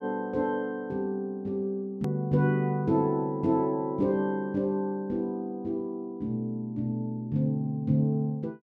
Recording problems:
hard cut with a click; at 2 s

